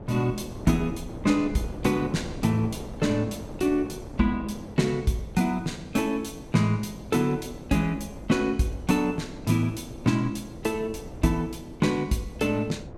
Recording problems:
wind noise; below 420 Hz, SNR 14 dB

